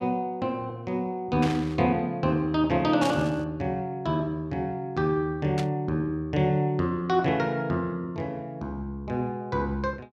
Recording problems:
static burst; at 1.5 s, at 3 s and at 5.5 s; peak -3 dB vs average level

